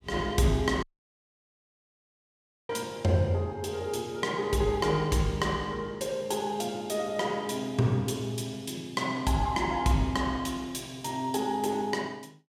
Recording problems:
audio cutting out; at 1 s for 2 s

